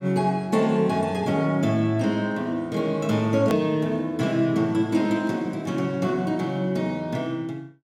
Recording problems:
hard cut with a click; at 3.5 s

